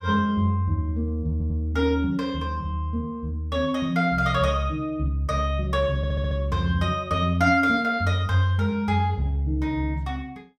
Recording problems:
audio stuttering; at 1.5 s and at 6 s

